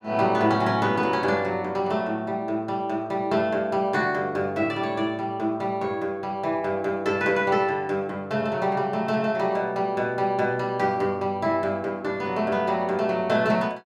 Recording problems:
none

